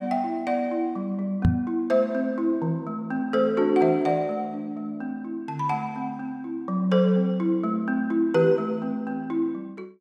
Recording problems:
knock on the microphone; at 1.5 s; peak +9 dB vs average level

